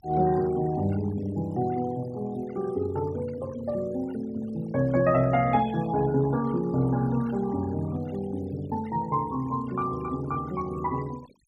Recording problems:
noise reduction artefacts; signal-to-artefact ratio 21 dB

